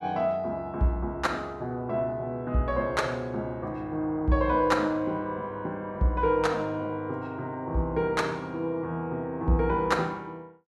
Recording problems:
none

